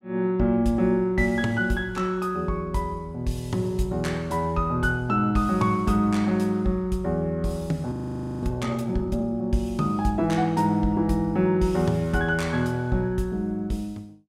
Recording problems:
frozen audio; at 8 s for 0.5 s

